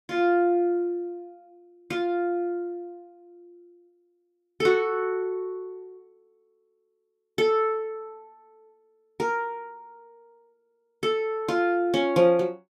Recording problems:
none

